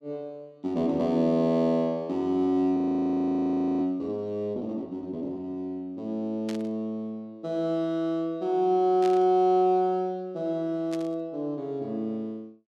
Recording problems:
frozen audio; at 3 s for 1 s
burst of static; at 6.5 s, at 9 s and at 11 s; peak -10 dB vs average level

